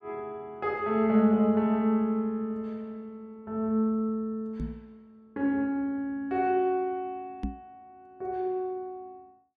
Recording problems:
microphone bump; at 4.5 s and at 7.5 s; peak -1 dB vs average level

